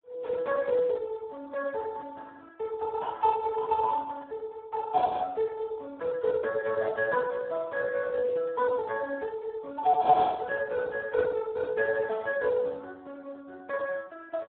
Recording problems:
phone line; 300 Hz to 2.2 kHz, Speex

